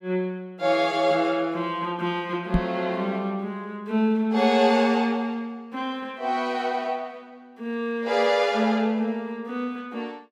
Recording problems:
microphone thump; at 2.5 s; peak +6 dB vs average level

